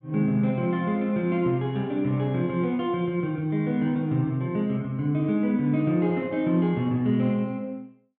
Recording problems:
none

